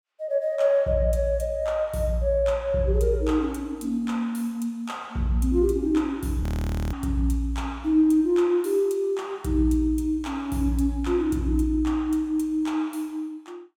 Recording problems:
frozen audio; at 6.5 s for 0.5 s

